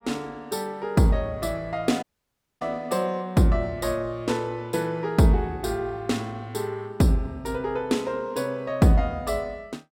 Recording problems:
audio cutting out; at 2 s for 0.5 s

